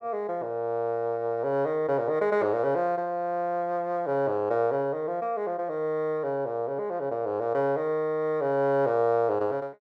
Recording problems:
none

